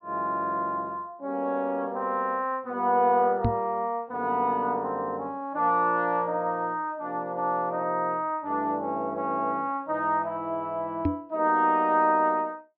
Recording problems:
treble missing; nothing above 5.5 kHz
knock on the microphone; at 3.5 s and at 11 s; peak +4 dB vs average level

